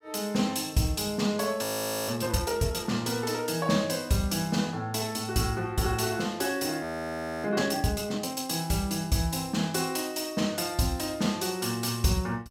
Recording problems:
audio freezing; at 1.5 s and at 7 s for 0.5 s

